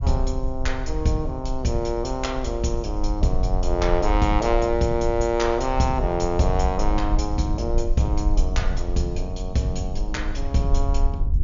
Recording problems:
low-pass filter; nothing above 7.1 kHz
rumble; below 54 Hz, SNR 3 dB
wind noise; below 200 Hz, SNR 14 dB

